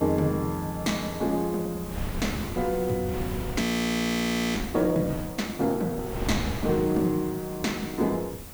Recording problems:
hiss; slope +4 dB per octave, SNR 16 dB
wind noise; below 320 Hz, SNR 10 dB
audio freezing; at 3.5 s for 1 s

